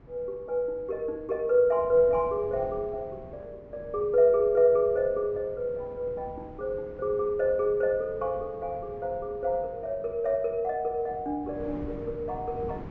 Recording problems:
low-pass filter; nothing above 8 kHz
wind noise; below 370 Hz, SNR 19 dB

